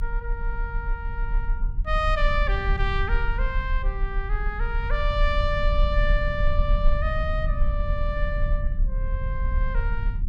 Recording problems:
low-frequency rumble; below 48 Hz, SNR -2 dB

